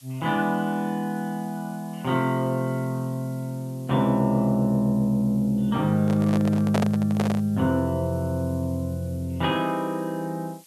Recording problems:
background hiss; slope +3 dB per octave, SNR 26 dB
handling noise; from 6 to 7.5 s; peak +2 dB vs average level

